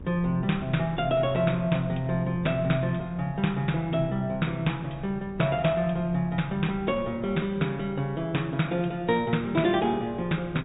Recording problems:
low-pass filter; nothing above 4 kHz
wind noise; below 230 Hz, SNR 18 dB

